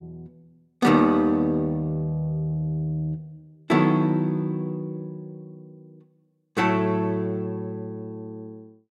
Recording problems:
none

